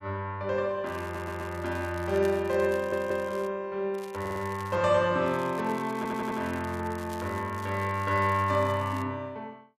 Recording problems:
crackle; from 1 to 3.5 s, at 4 s and from 5.5 to 9 s; loose cable, SNR 21 dB
audio stuttering; 4 times, first at 1 s

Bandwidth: 13.5 kHz